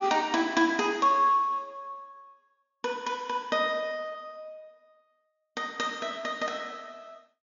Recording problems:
low-pass filter; nothing above 7 kHz

